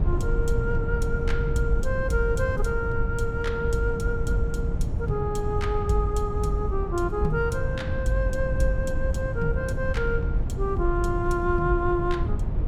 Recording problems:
wind noise; below 110 Hz, SNR 1 dB

